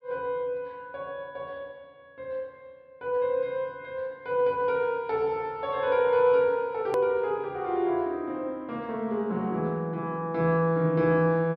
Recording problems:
treble missing; nothing above 5.5 kHz
hard cut with a click; at 7 s

